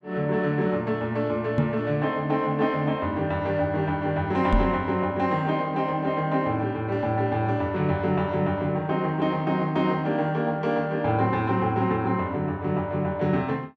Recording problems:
microphone bump; at 1.5 s and at 4.5 s; peak +6 dB vs average level

